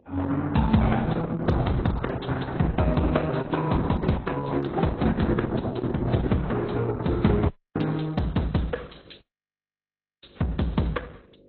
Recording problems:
lossy compression; Opus, then AAC, log-spectral distance 5 dB
hum; 50 Hz, harmonics up to 650 Hz, SNR 30 dB
dropout; at 7.5 s and at 9 s for 1 s

